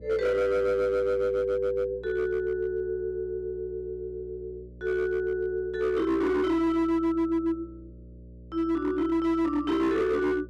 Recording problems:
distortion; hard clipping, signal-to-distortion ratio 10 dB
mains hum; 60 Hz, harmonics up to 600 Hz, SNR 20 dB

